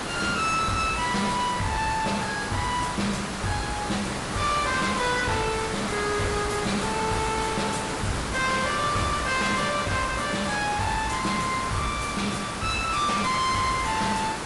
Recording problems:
lossy compression; MP3, log-spectral distance 8 dB, nothing above 11 kHz
distortion; hard clipping, uneven, signal-to-distortion ratio 6 dB
background hiss; SNR 4 dB

